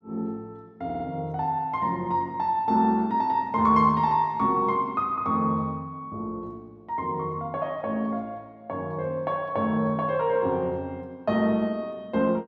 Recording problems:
audio stuttering; at 1 s

